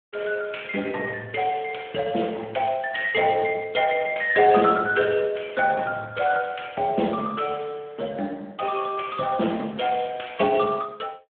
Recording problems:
phone line; 150 Hz to 3.3 kHz, Speex

